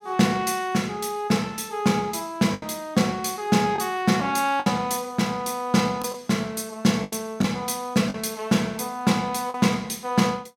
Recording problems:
packet loss; 4% of the sound replaced, filled with the last packet

